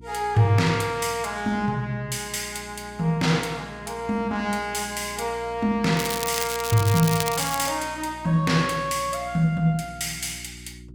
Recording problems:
electrical hum; 60 Hz, harmonics up to 360 Hz, SNR 21 dB
crackle; from 6 to 7.5 s; loose cable, SNR 6 dB

